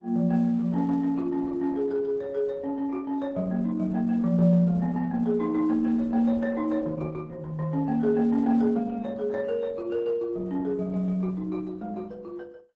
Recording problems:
lossy codec; AAC, then Opus, log-spectral distance 2 dB, nothing above 7.6 kHz

